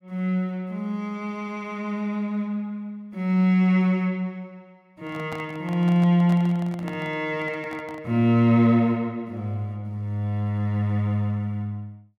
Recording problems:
microphone handling noise; from 5 to 8 s; peak -9 dB vs average level

